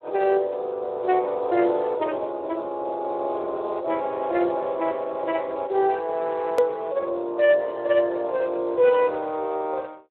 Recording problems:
telephone audio; 300 Hz to 3.4 kHz, Speex
hard cut with a click; at 6.5 s

